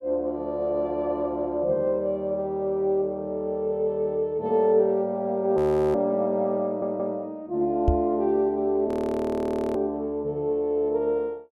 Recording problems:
frozen audio; at 5.5 s and at 9 s for 1 s
audio stuttering; at 6.5 s
microphone thump; at 8 s; peak +6 dB vs average level

